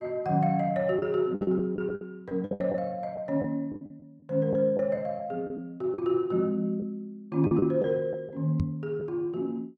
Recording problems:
lost packets; 9% of the sound replaced, filled with the last packet
microphone thump; at 8.5 s; peak +3 dB vs average level

